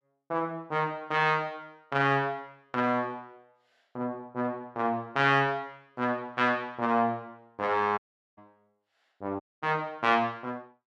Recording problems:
dropout; at 8 s and at 9.5 s

